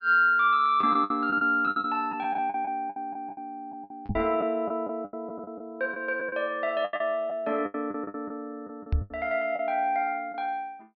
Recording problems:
treble cut off; nothing above 5.5 kHz
packet loss; 13% of the sound replaced, filled with the last packet
microphone bump; at 4 s and at 9 s; peak +4 dB vs average level

